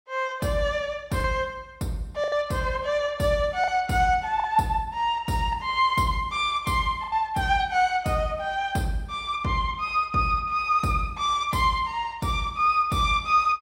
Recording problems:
lost packets; 2% of the sound replaced, filled with the last packet

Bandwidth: 16 kHz